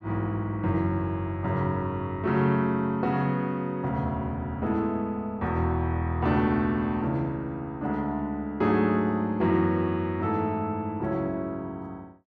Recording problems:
none

